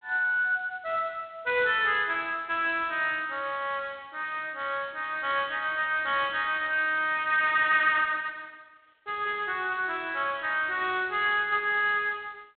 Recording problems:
telephone audio; 320 Hz to 3.7 kHz, G.726

